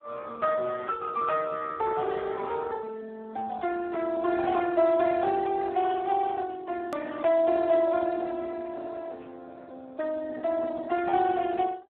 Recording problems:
telephone audio; 260 Hz to 2.5 kHz, Speex
click at an edit; at 7 s

